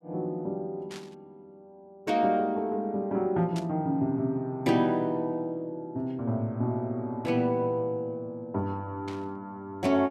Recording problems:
static burst; at 1 s, at 3.5 s and at 9 s; peak -9 dB vs average level

